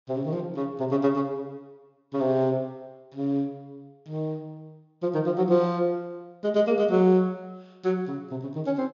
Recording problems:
treble missing; nothing above 6.9 kHz

